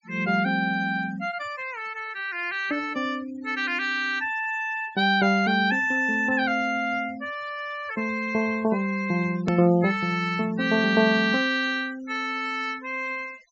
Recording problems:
low-pass filter; nothing above 7.6 kHz
noise reduction artefacts; signal-to-artefact ratio 23 dB
hard cut with a click; at 9.5 s

